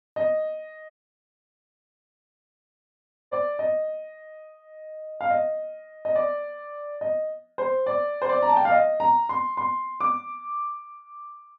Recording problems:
audio cutting out; at 1 s for 2.5 s

